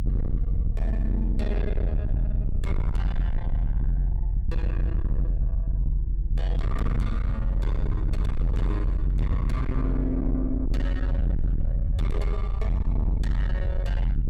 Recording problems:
distorted audio; soft clipping, signal-to-distortion ratio 6 dB
rumble; below 72 Hz, strongest tone 44 Hz, SNR -6 dB

